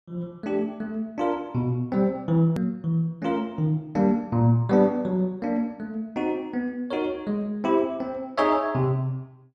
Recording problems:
click at an edit; at 2.5 s

